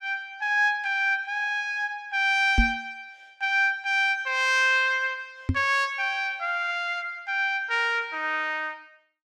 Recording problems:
knock on the microphone; at 2.5 s and at 5.5 s; peak +5 dB vs average level

